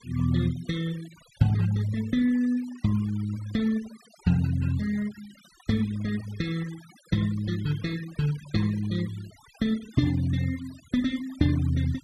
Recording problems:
denoising artefacts; signal-to-artefact ratio 20 dB

